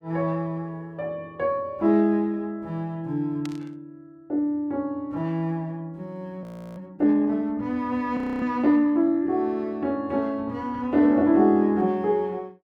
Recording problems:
burst of static; at 3.5 s; peak -11 dB vs average level
audio freezing; at 6.5 s and at 8 s

